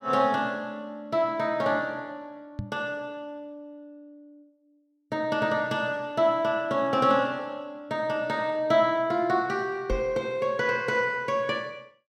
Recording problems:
knock on the microphone; at 2.5 s and at 10 s; peak -2 dB vs average level

